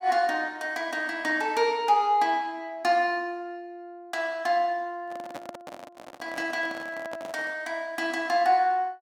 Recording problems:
microphone handling noise; from 5 to 7.5 s; peak -7 dB vs average level

